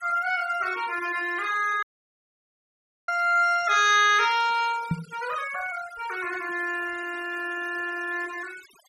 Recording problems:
denoising artefacts; signal-to-artefact ratio 18 dB
audio cutting out; at 2 s for 1.5 s
knock on the microphone; at 5 s; peak +2 dB vs average level

